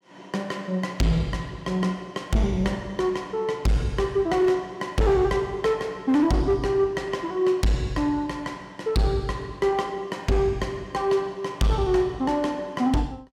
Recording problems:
distortion; hard clipping, signal-to-distortion ratio 11 dB

